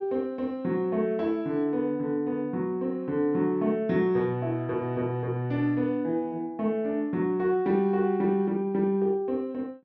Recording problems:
treble missing; nothing above 7.2 kHz

